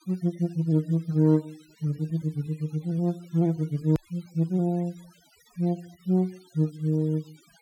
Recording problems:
denoising artefacts; signal-to-artefact ratio 27 dB
click at an edit; at 4 s

